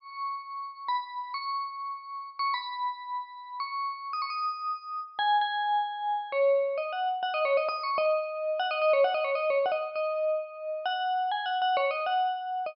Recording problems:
low-pass filter; nothing above 5.5 kHz

